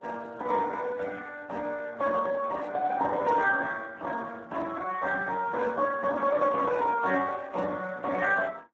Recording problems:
codec artefacts; MP3, then Speex, log-spectral distance 4 dB

